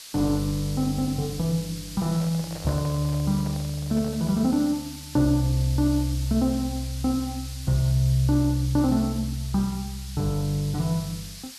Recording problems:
hiss; slope +4 dB per octave, SNR 14 dB
microphone handling noise; from 2 to 4.5 s; peak -11 dB vs average level

